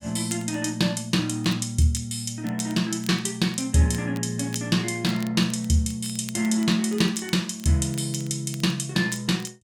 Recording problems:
crackling; vinyl, SNR 21 dB

